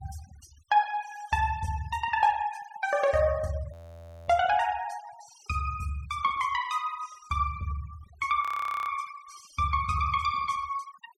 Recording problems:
denoising artefacts; signal-to-artefact ratio 19 dB
audio freezing; at 3.5 s for 0.5 s and at 8.5 s

